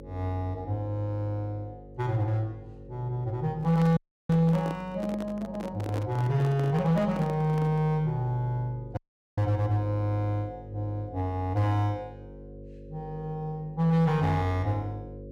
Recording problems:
distortion; hard clipping, signal-to-distortion ratio 11 dB
mains hum; 50 Hz, harmonics up to 550 Hz, SNR 17 dB
handling noise; from 3.5 to 8 s; peak -4 dB vs average level
audio cutting out; at 4 s and at 9 s

